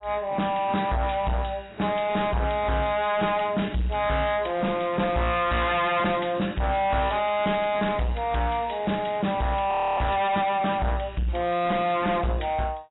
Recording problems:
lossy compression; AAC, log-spectral distance 4 dB, nothing above 3.9 kHz
distorted audio; soft clipping, signal-to-distortion ratio 6 dB
audio freezing; at 9.5 s

